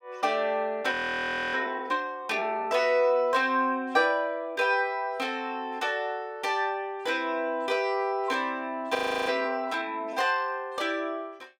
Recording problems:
audio freezing; at 1 s for 0.5 s and at 9 s

